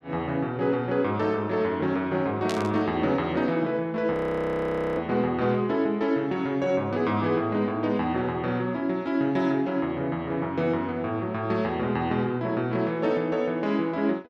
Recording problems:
burst of static; at 2.5 s; peak -3 dB vs average level
frozen audio; at 4 s for 1 s

